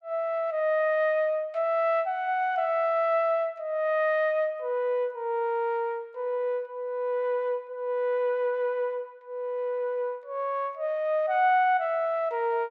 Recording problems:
none

